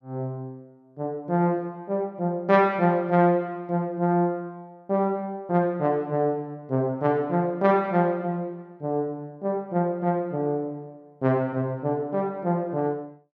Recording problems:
none

